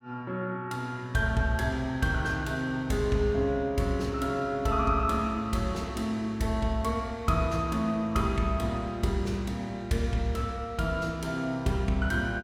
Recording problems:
none

